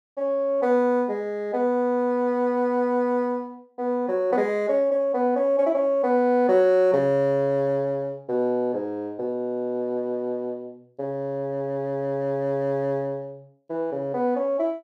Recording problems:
none

